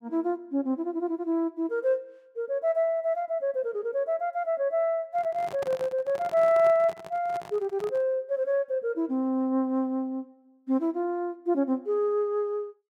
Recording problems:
microphone handling noise; from 5 to 8 s; peak -7 dB vs average level

